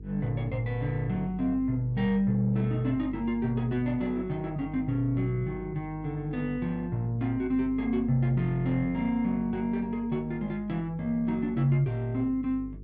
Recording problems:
hum; 50 Hz, harmonics up to 450 Hz, SNR 15 dB

